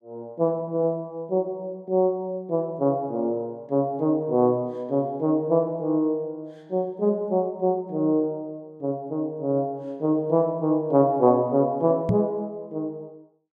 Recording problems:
microphone bump; at 12 s; peak +5 dB vs average level

